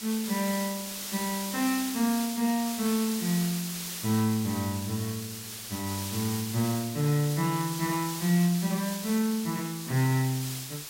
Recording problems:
hiss; slope +1 dB per octave, SNR 6 dB

